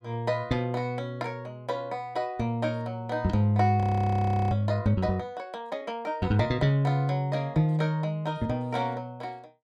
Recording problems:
audio freezing; at 4 s for 0.5 s

